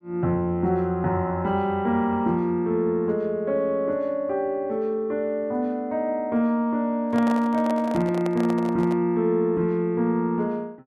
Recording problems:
microphone handling noise; from 7 to 9 s; peak -5 dB vs average level

